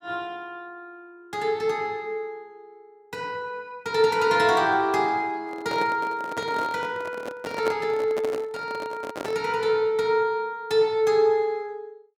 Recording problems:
handling noise; from 5.5 to 9.5 s; peak -1 dB vs average level

